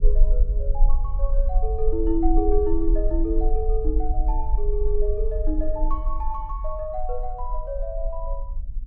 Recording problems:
rumble; below 42 Hz, strongest tone 22 Hz, SNR -2 dB

